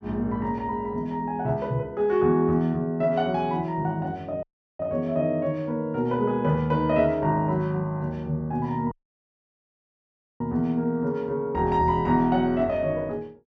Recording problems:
audio cutting out; at 4.5 s and at 9 s for 1.5 s

